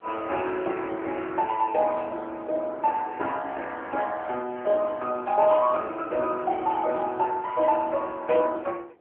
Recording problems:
telephone audio; 280 Hz to 3.4 kHz, AMR-NB
wind noise; below 560 Hz, SNR 19 dB

